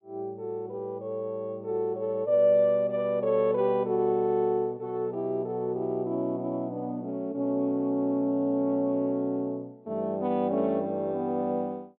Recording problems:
treble cut off; nothing above 4 kHz

